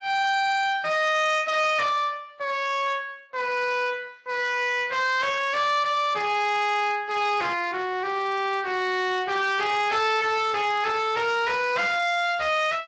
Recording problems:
lossy compression; AAC, then Speex, log-spectral distance 5 dB, nothing above 7.3 kHz
distorted audio; soft clipping, signal-to-distortion ratio 6 dB

